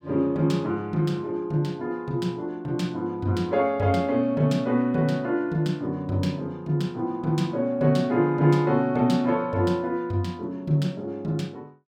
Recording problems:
none

